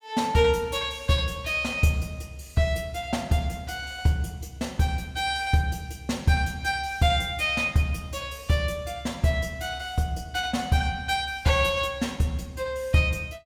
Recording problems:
none

